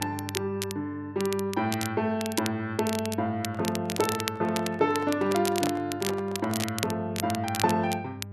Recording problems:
electrical hum; 50 Hz, harmonics up to 800 Hz, SNR 13 dB
crackle; vinyl, SNR 8 dB
microphone handling noise; from 3.5 to 7 s; peak -2 dB vs average level

